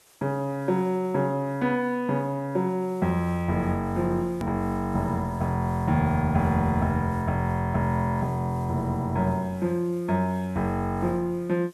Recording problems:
hiss; slope -1 dB per octave, SNR 29 dB
hard cut with a click; at 4.5 s

